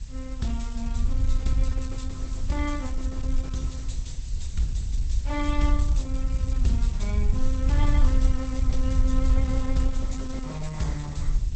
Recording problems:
codec artefacts; Opus, log-spectral distance 3 dB, nothing above 8.2 kHz
hiss; slope +2 dB per octave, SNR 16 dB
wind on the microphone; below 64 Hz, SNR -5 dB

